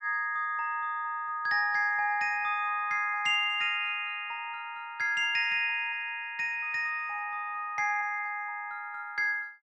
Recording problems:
none

